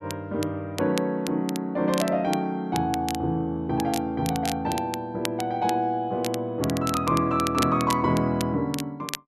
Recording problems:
crackling; vinyl, SNR 12 dB

